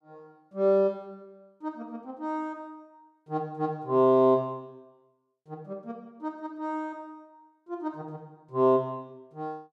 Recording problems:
none

